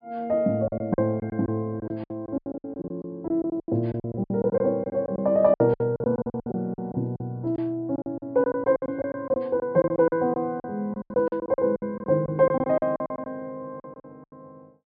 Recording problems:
low-pass filter; nothing above 5.5 kHz
lost packets; 19% of the sound replaced, filled with silence

